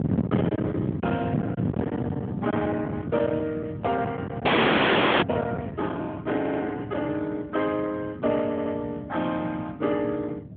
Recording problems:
telephone audio; 150 Hz to 3.5 kHz, AMR-NB
distorted audio; hard clipping, signal-to-distortion ratio 11 dB
wind on the microphone; below 360 Hz, SNR 4 dB
audio freezing; at 4.5 s for 1 s
stutter; at 6.5 s and at 8.5 s

